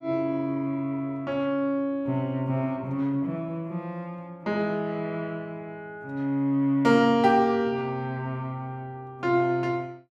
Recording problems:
none

